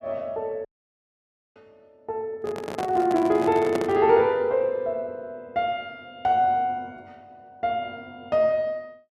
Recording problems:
audio cutting out; at 0.5 s for 1 s
microphone handling noise; from 2.5 to 4 s; peak -2 dB vs average level

